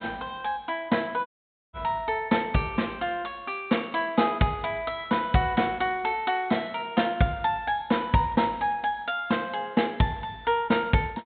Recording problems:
treble missing; nothing above 4 kHz
audio cutting out; at 1.5 s

